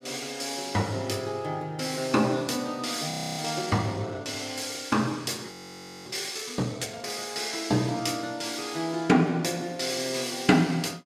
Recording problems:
frozen audio; at 3 s and at 5.5 s for 0.5 s

